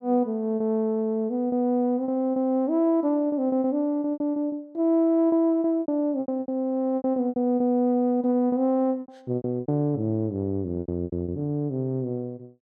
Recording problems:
lost packets; 12% of the sound replaced, filled with repeated pitch periods

